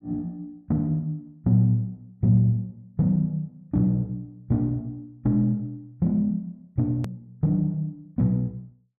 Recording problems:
hard cut with a click; at 7 s

